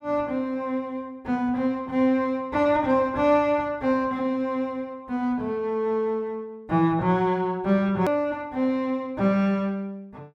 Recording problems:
click at an edit; at 8 s

